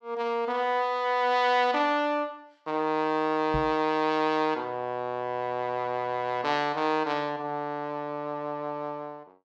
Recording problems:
knock on the microphone; at 3.5 s; peak -2 dB vs average level

